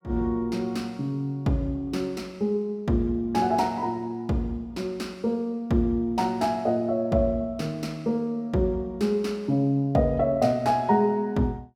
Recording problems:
none

